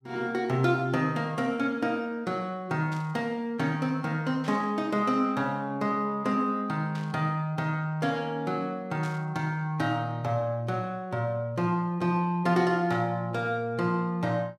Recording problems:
burst of static; 5 times, first at 3 s; peak -11 dB vs average level

